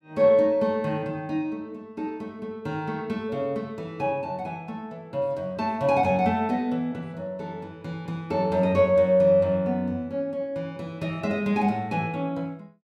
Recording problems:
none

